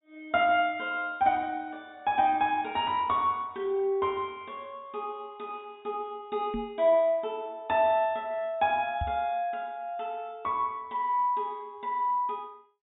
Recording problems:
treble missing; nothing above 4 kHz
knock on the microphone; at 6.5 s and at 9 s; peak -2 dB vs average level

